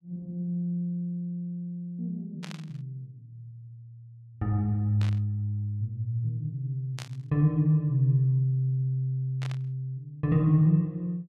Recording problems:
static burst; 4 times, first at 2.5 s; peak -8 dB vs average level

